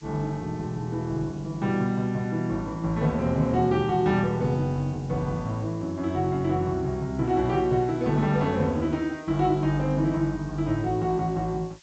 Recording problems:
treble missing; nothing above 8 kHz
background hiss; slope +3 dB per octave, SNR 28 dB

